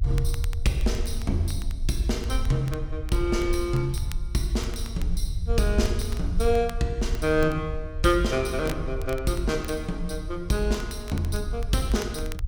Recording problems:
rumble; below 70 Hz, SNR 5 dB
crackling; vinyl, SNR 19 dB

